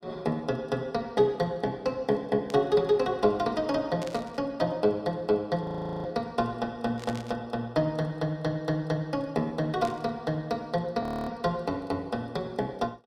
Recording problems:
burst of static; 4 times, first at 2.5 s; peak -9 dB vs average level
frozen audio; at 5.5 s and at 11 s

